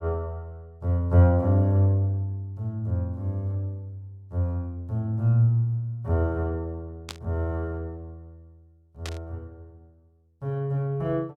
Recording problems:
burst of static; at 7 s and at 9 s; peak -4 dB vs average level

